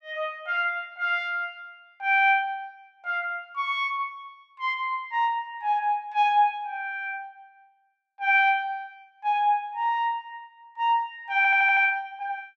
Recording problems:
stutter; at 11 s

